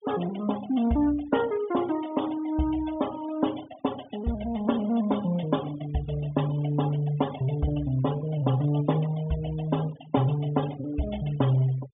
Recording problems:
treble cut off; nothing above 3.6 kHz
noise reduction artefacts; signal-to-artefact ratio 17 dB

